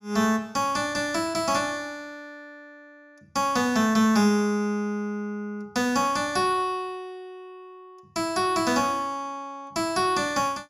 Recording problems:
none

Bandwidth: 15.5 kHz